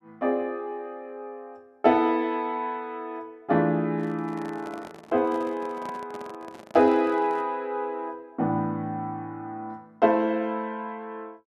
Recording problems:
handling noise; from 4 to 7.5 s; peak -11 dB vs average level

